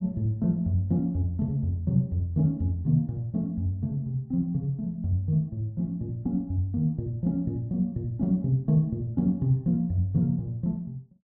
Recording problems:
none

